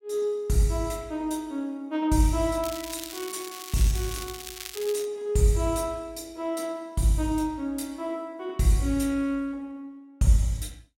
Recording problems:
crackle; from 2.5 to 5 s; loose cable, SNR 10 dB

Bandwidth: 16.5 kHz